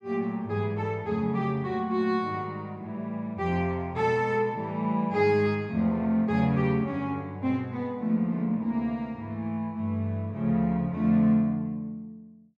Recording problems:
none

